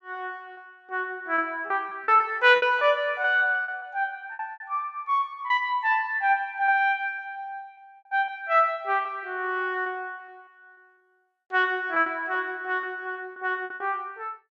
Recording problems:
packet loss; 9% of the sound replaced, filled with repeated pitch periods

